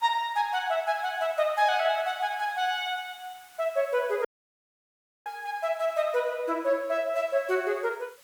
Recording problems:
hiss; SNR 26 dB
audio cutting out; at 4.5 s for 1 s

